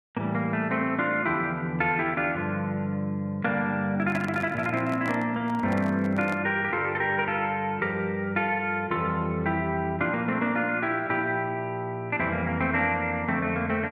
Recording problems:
handling noise; from 4 to 6.5 s; peak -5 dB vs average level

